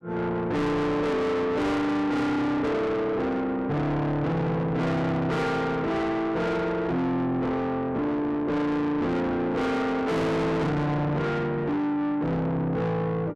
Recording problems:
distorted audio; soft clipping, signal-to-distortion ratio 6 dB

